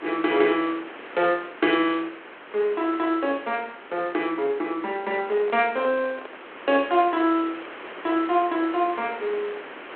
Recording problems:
phone line; 300 Hz to 3.4 kHz, G.726
background hiss; SNR 15 dB
microphone handling noise; from 5 to 6.5 s; peak -10 dB vs average level

